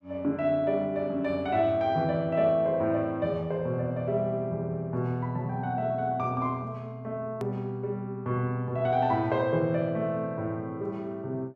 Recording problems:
edit click; at 7.5 s

